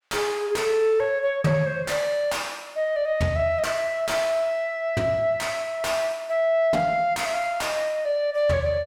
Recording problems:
distortion; soft clipping, signal-to-distortion ratio 10 dB

